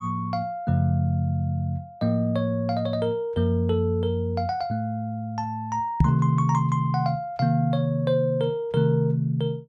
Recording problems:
knock on the microphone; at 6 s; peak +9 dB vs average level

